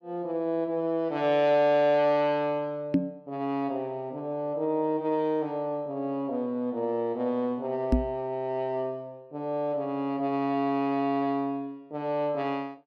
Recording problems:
knock on the microphone; at 3 s and at 8 s; peak +8 dB vs average level

